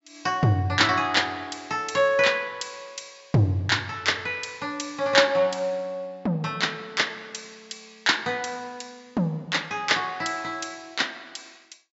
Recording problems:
low-pass filter; nothing above 8 kHz

